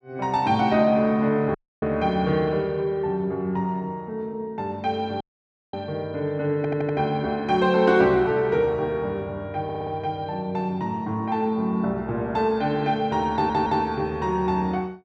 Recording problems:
dropout; at 1.5 s and at 5 s for 0.5 s
stutter; at 6.5 s, at 9.5 s and at 13 s

